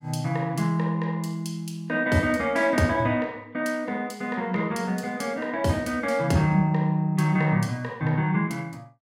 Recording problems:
none

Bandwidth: 16 kHz